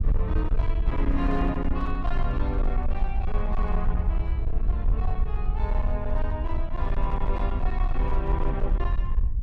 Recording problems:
distortion; hard clipping, uneven, signal-to-distortion ratio 12 dB
low-frequency rumble; below 56 Hz, SNR -4 dB

